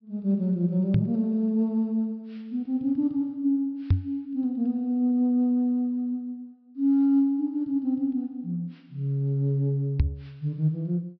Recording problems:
low-pass filter; nothing above 5.5 kHz
microphone thump; at 1 s, at 4 s and at 10 s; peak +8 dB vs average level

